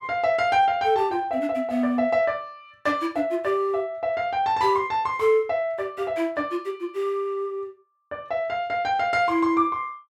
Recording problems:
none

